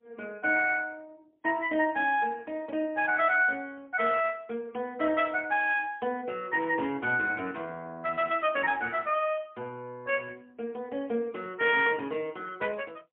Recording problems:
phone line; 240 Hz to 3.3 kHz, AMR-NB, then MP3

